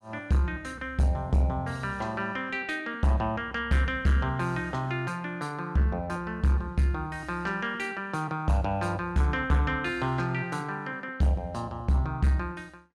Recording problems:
distorted audio; soft clipping, signal-to-distortion ratio 11 dB

